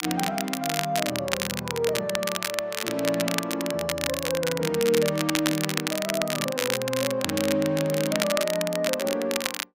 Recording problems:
crackle; vinyl, SNR 2 dB

